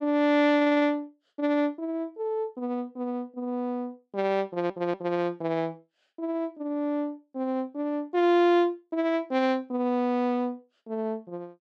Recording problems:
audio stuttering; at 0.5 s and at 4.5 s

